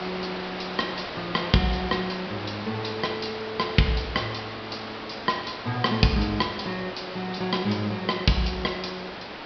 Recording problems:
treble cut off; nothing above 5.5 kHz
hiss; SNR 8 dB

